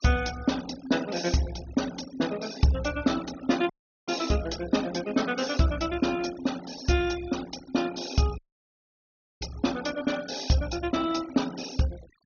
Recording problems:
low-pass filter; nothing above 6.6 kHz
denoising artefacts; signal-to-artefact ratio 15 dB
dropout; at 3.5 s and at 8.5 s for 1 s

